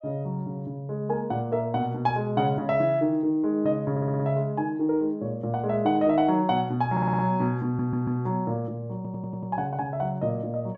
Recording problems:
audio stuttering; 4 times, first at 4 s

